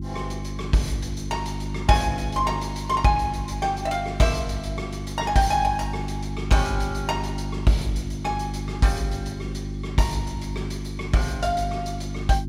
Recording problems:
mains hum; 50 Hz, harmonics up to 350 Hz, SNR 7 dB

